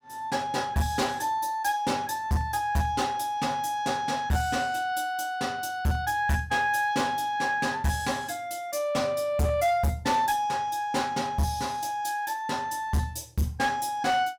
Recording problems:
distortion; hard clipping, signal-to-distortion ratio 10 dB

